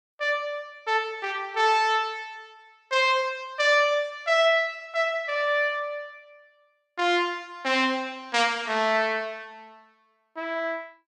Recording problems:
none

